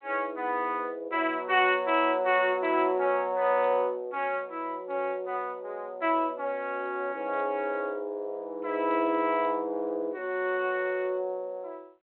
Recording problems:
phone line; 300 Hz to 3.3 kHz, G.726

